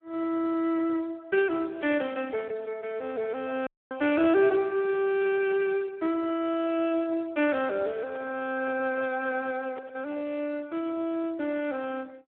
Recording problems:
phone line; 300 Hz to 3.5 kHz, Speex
audio cutting out; at 3.5 s
handling noise; from 8 to 10 s; peak -12 dB vs average level

